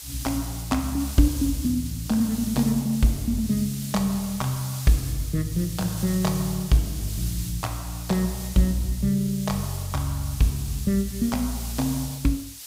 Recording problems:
background hiss; slope +4 dB per octave, SNR 11 dB

